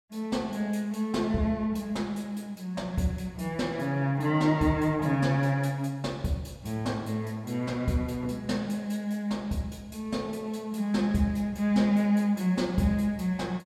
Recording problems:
none

